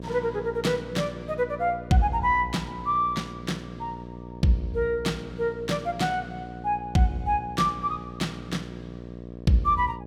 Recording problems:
electrical hum; 60 Hz, harmonics up to 1.1 kHz, SNR 13 dB

